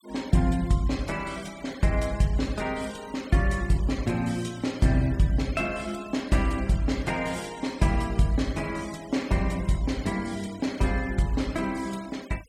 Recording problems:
denoising artefacts; signal-to-artefact ratio 20 dB

